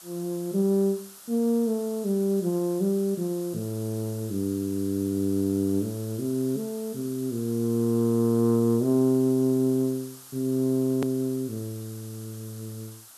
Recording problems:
background hiss; SNR 18 dB
hard cut with a click; at 11 s

